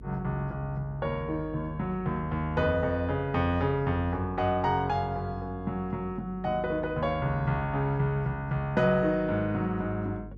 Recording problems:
hum; 50 Hz, harmonics up to 450 Hz, SNR 16 dB

